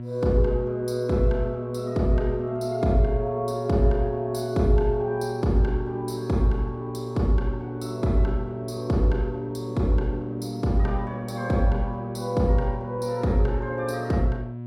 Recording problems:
hum; 60 Hz, harmonics up to 720 Hz, SNR 9 dB

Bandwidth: 16.5 kHz